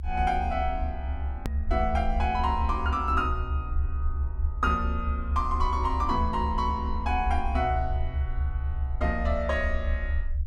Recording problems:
low-frequency rumble; below 72 Hz, strongest tone 68 Hz, SNR 2 dB
hard cut with a click; at 1.5 s

